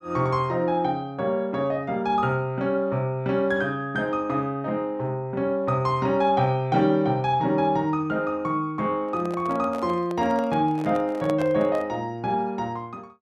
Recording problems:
handling noise; from 9 to 12 s; peak -4 dB vs average level

